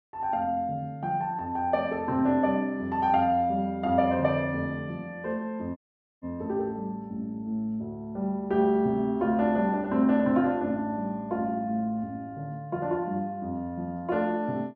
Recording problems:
audio cutting out; at 6 s

